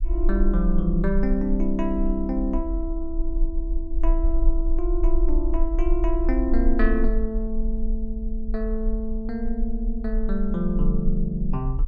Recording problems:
low-frequency rumble; below 40 Hz, strongest tone 22 Hz, SNR 1 dB

